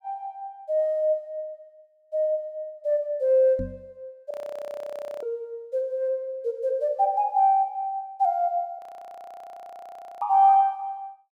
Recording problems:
knock on the microphone; at 3.5 s; peak -4 dB vs average level
frozen audio; at 4.5 s for 1 s and at 9 s for 1.5 s

